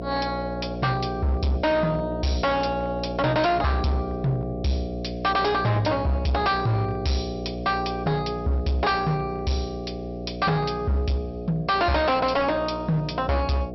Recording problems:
low-pass filter; nothing above 5.7 kHz
distorted audio; hard clipping, signal-to-distortion ratio 7 dB
electrical hum; 60 Hz, harmonics up to 720 Hz, SNR 8 dB

